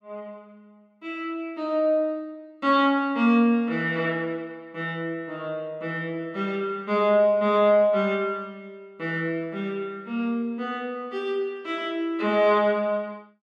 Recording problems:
none

